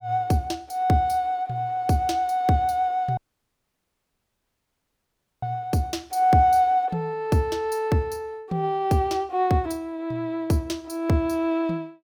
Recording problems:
dropout; at 3 s for 2.5 s

